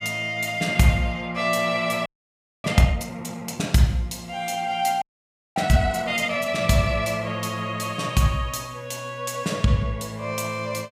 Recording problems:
audio freezing; at 2 s for 0.5 s and at 5 s for 0.5 s

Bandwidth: 15.5 kHz